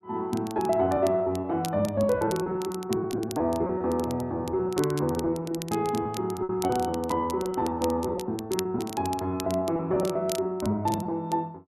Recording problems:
crackle; vinyl, SNR 15 dB
lost packets; 16% of the sound replaced, filled with repeated pitch periods

